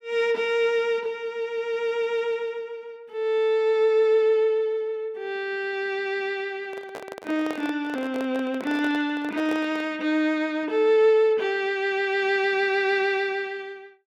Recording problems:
microphone handling noise; from 6.5 to 10 s; peak -6 dB vs average level

